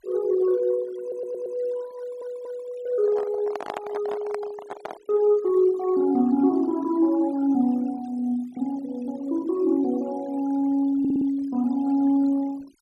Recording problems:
denoising artefacts; signal-to-artefact ratio 23 dB
audio stuttering; at 1 s, at 2 s and at 11 s
handling noise; from 3 to 5 s; peak -4 dB vs average level

